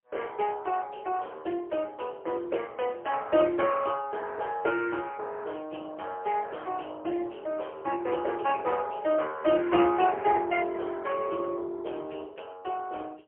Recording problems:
telephone audio; 300 Hz to 3.2 kHz, AMR-NB, then MP3

